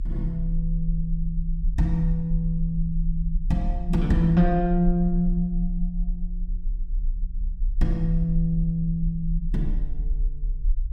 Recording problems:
rumble; below 38 Hz, strongest tone 32 Hz, SNR 5 dB

